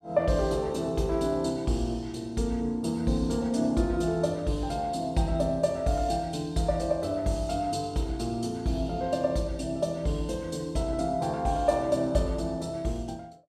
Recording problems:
none

